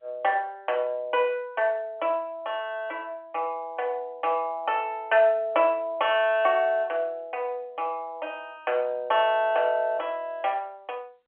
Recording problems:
telephone audio; 340 Hz to 3.3 kHz, G.711

